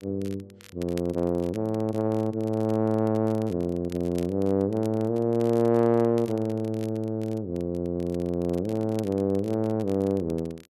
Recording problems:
crackling; vinyl, SNR 25 dB

